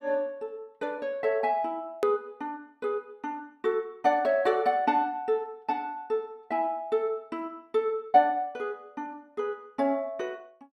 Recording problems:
edit click; at 2 s

